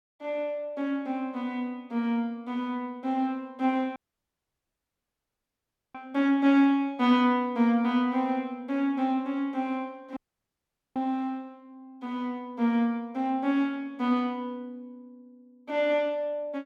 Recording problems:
dropout; at 4 s for 2 s and at 10 s for 1 s

